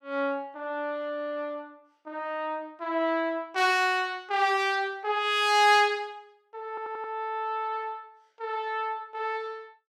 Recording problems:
stutter; at 6.5 s

